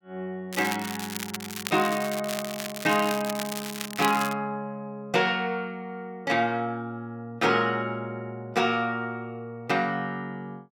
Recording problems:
crackling; from 0.5 to 4.5 s; loose cable, SNR 7 dB

